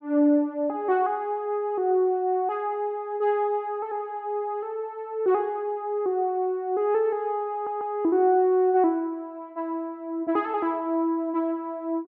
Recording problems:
audio stuttering; at 7.5 s

